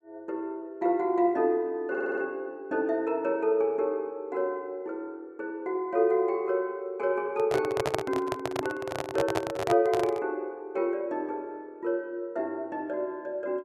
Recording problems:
audio stuttering; at 2 s
handling noise; from 7.5 to 10 s; peak +4 dB vs average level

